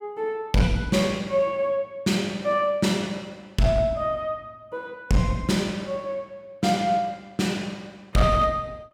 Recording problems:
distortion; hard clipping, uneven, signal-to-distortion ratio 11 dB

